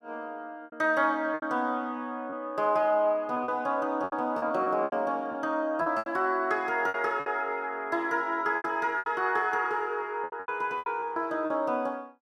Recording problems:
packet loss; 10% of the sound replaced, filled with repeated pitch periods

